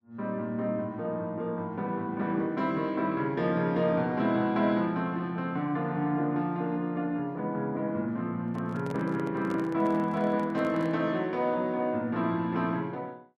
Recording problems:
handling noise; from 8.5 to 11 s; peak -8 dB vs average level

